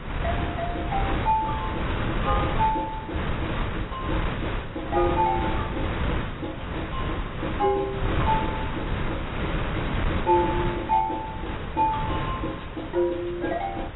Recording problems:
lossy compression; AAC, log-spectral distance 4 dB, nothing above 3.8 kHz
wind on the microphone; below 960 Hz, SNR 2 dB

